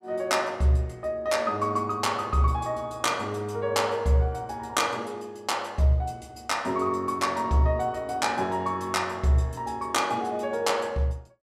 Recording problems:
none

